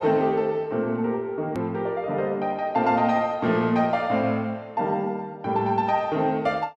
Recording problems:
edit click; at 1.5 s

